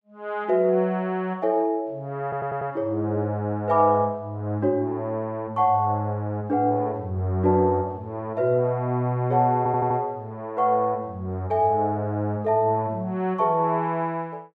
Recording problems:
audio stuttering; at 2 s and at 9.5 s

